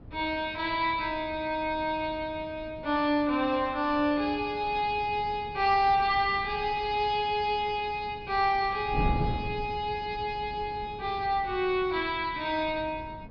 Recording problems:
treble missing; nothing above 5.5 kHz
wind noise; below 220 Hz, SNR 14 dB

